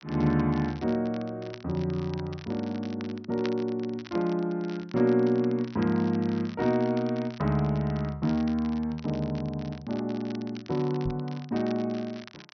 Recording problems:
treble cut off; nothing above 6 kHz
crackle; vinyl, SNR 20 dB
knock on the microphone; at 11 s; peak -2 dB vs average level

